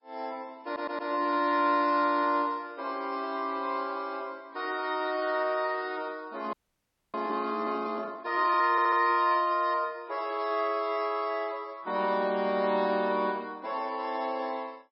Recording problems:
lossy compression; MP3, log-spectral distance 3 dB, nothing above 4.9 kHz
stutter; at 0.5 s and at 8.5 s
audio freezing; at 6.5 s for 0.5 s

